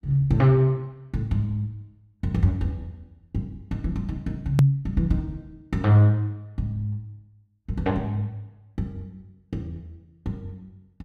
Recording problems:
click at an edit; at 4.5 s

